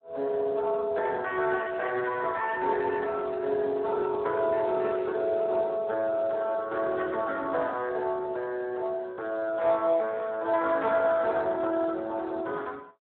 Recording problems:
telephone audio; 280 Hz to 2.6 kHz, Speex

